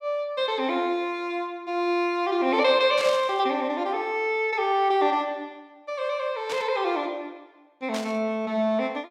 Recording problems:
static burst; at 3 s, at 6.5 s and at 8 s; peak -5 dB vs average level

